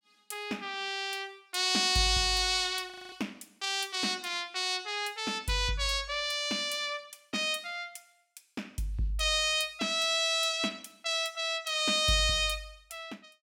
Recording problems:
frozen audio; at 3 s

